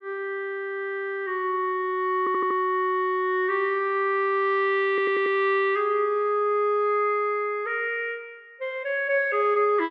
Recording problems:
stutter; at 2 s and at 5 s

